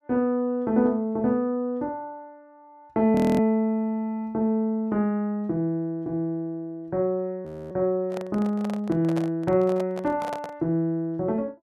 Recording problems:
audio freezing; at 3 s and at 7.5 s
handling noise; from 8 to 11 s; peak -5 dB vs average level

